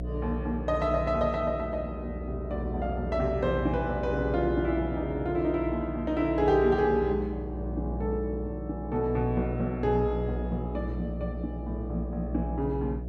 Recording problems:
hum; 60 Hz, harmonics up to 660 Hz, SNR 6 dB

